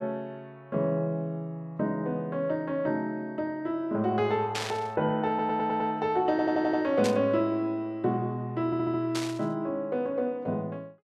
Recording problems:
burst of static; at 4.5 s, at 7 s and at 9 s; peak 0 dB vs average level
stutter; at 5.5 s, at 6.5 s and at 8.5 s

